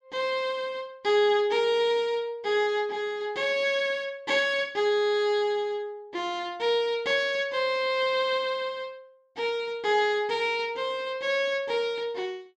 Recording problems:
none

